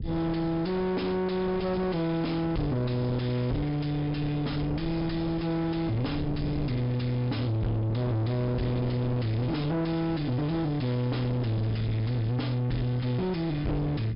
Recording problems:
treble cut off; nothing above 5.5 kHz
distorted audio; soft clipping, signal-to-distortion ratio 6 dB
low-frequency rumble; below 270 Hz, SNR 9 dB

